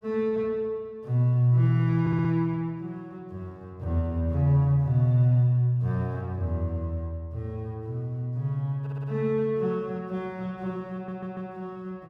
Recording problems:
audio stuttering; at 2 s, at 9 s and at 11 s

